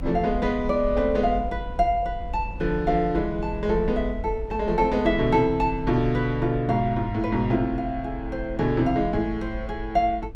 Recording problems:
rumble; below 64 Hz, SNR 11 dB

